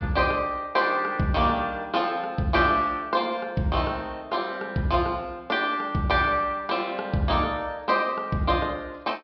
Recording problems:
low-pass filter; nothing above 5.5 kHz

